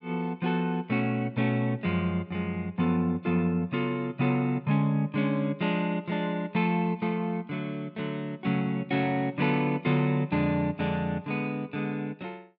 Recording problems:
none

